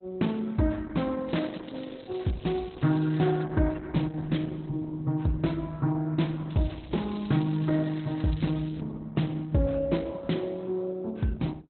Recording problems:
codec artefacts; Opus, log-spectral distance 6 dB, nothing above 4 kHz
crackling; from 1.5 to 3.5 s and from 6.5 to 9 s; loose cable, SNR 22 dB

